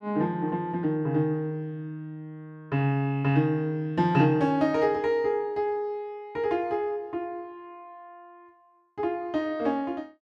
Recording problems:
none

